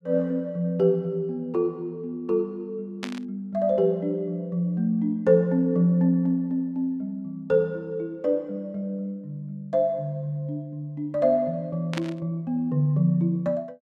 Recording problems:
burst of static; at 3 s and at 12 s; peak -3 dB vs average level

